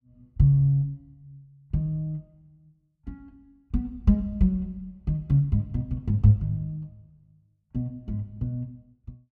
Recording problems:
none

